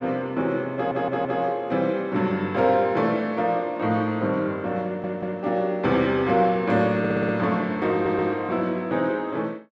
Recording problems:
stutter; 4 times, first at 1 s

